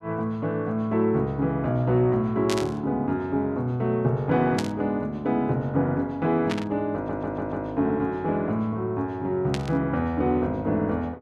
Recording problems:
static burst; 4 times, first at 2.5 s; peak -2 dB vs average level
stutter; at 7 s

